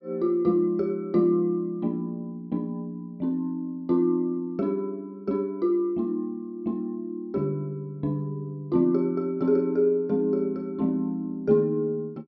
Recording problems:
none

